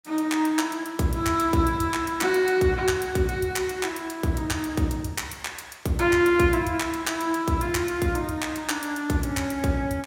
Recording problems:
none

